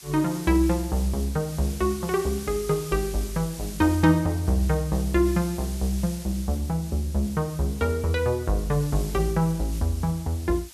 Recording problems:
hiss; slope +3 dB per octave, SNR 15 dB

